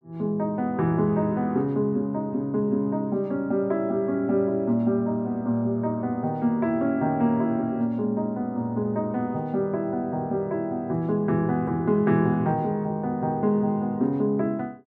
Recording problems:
none

